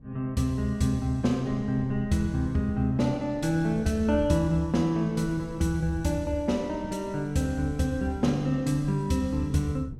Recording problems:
wind on the microphone; below 140 Hz, SNR 18 dB

